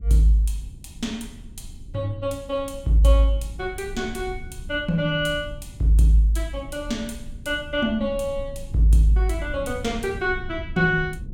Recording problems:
low-frequency rumble; below 96 Hz, SNR 15 dB

